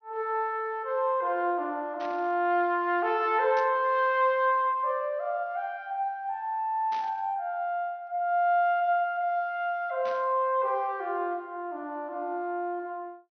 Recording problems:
treble missing; nothing above 6.1 kHz
static burst; 4 times, first at 2 s; peak -12 dB vs average level

